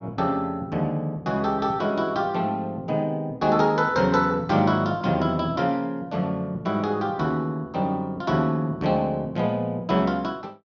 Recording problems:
low-pass filter; nothing above 7.2 kHz

